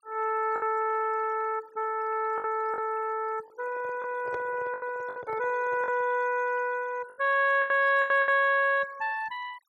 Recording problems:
noise reduction artefacts; signal-to-artefact ratio 24 dB
lost packets; 7% of the sound replaced, filled with the last packet
microphone handling noise; from 3.5 to 6 s; peak -7 dB vs average level

